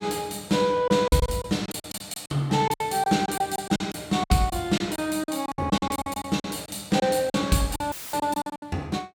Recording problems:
packet loss; 15% of the sound replaced, filled with silence
dropout; at 8 s; filled with static

